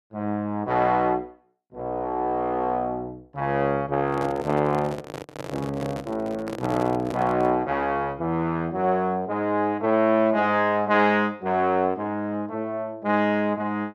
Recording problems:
microphone handling noise; from 4 to 7.5 s; peak -5 dB vs average level

